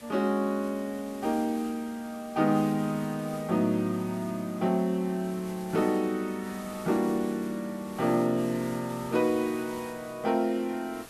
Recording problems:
hiss; slope -2 dB per octave, SNR 19 dB

